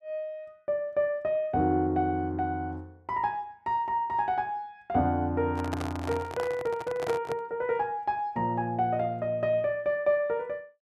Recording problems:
microphone handling noise; from 5.5 to 7.5 s; peak -1 dB vs average level

